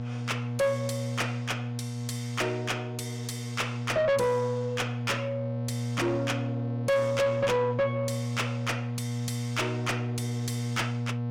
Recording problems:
distorted audio; soft clipping, signal-to-distortion ratio 6 dB
hum; 60 Hz, harmonics up to 840 Hz, SNR 3 dB

